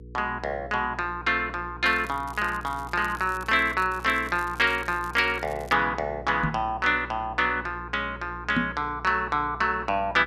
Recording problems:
electrical hum; 60 Hz, harmonics up to 480 Hz, SNR 17 dB
crackle; from 2 to 5.5 s; loose cable, SNR 23 dB
microphone thump; at 6.5 s and at 8.5 s; peak +3 dB vs average level

